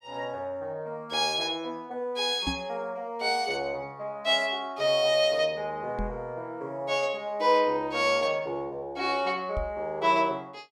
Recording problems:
microphone thump; at 2.5 s, at 6 s and at 9.5 s; peak -1 dB vs average level

